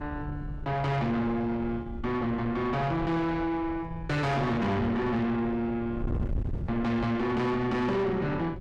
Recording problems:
distorted audio; soft clipping, signal-to-distortion ratio 7 dB
wind noise; below 170 Hz, SNR 10 dB

